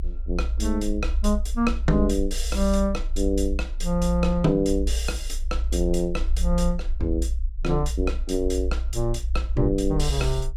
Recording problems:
low-frequency rumble; below 58 Hz, strongest tone 26 Hz, SNR 3 dB

